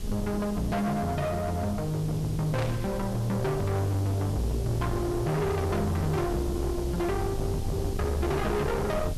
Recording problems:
distorted audio; soft clipping, signal-to-distortion ratio 7 dB
hum; 50 Hz, harmonics up to 1.1 kHz, SNR 26 dB
hiss; slope +1 dB per octave, SNR 18 dB
rumble; below 220 Hz, SNR 8 dB
static burst; at 2.5 s; peak -6 dB vs average level

